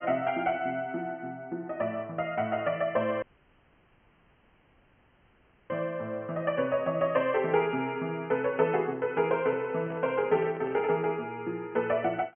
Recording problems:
low-pass filter; nothing above 3.2 kHz
audio cutting out; at 3 s for 2.5 s
microphone handling noise; from 9.5 to 11 s; peak -8 dB vs average level

